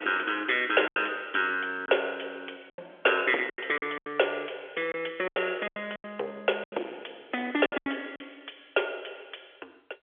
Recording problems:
phone line; 320 Hz to 3.4 kHz, G.711
distortion; soft clipping, signal-to-distortion ratio 13 dB
packet loss; 10% of the sound replaced, filled with silence

